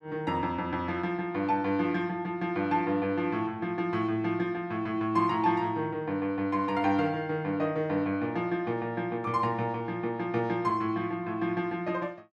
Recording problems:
none

